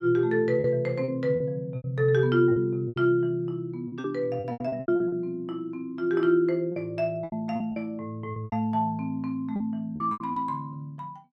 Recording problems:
lost packets; 11% of the sound replaced, filled with repeated pitch periods

